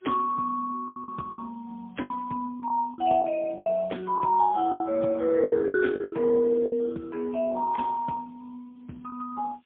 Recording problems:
phone line; 220 Hz to 3.3 kHz, AMR-NB, then MP3
background hiss; SNR 42 dB
lost packets; 9% of the sound replaced, filled with the last packet

